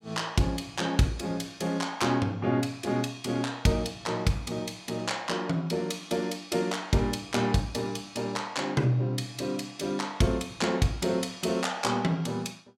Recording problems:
none

